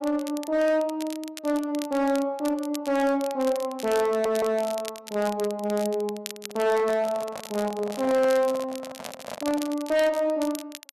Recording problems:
distortion; hard clipping, signal-to-distortion ratio 10 dB
crackle; vinyl, SNR 16 dB
audio stuttering; at 4 s
handling noise; from 6.5 to 10 s; peak -6 dB vs average level

